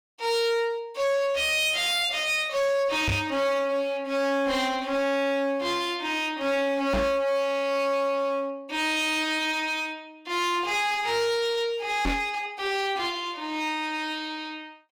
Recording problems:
distortion; hard clipping, uneven, signal-to-distortion ratio 7 dB
microphone bump; at 3 s, at 7 s and at 12 s; peak +4 dB vs average level

